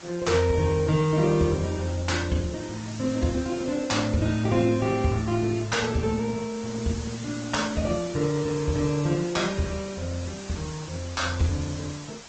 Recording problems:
low-pass filter; nothing above 7.8 kHz
lossy codec; Opus, log-spectral distance 8 dB
hiss; slope -1 dB per octave, SNR 15 dB

